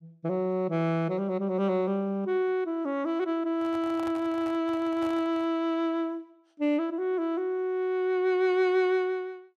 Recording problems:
handling noise; from 3.5 to 5.5 s; peak -9 dB vs average level

